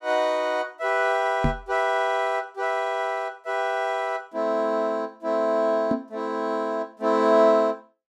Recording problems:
microphone thump; at 1.5 s and at 6 s; peak +3 dB vs average level

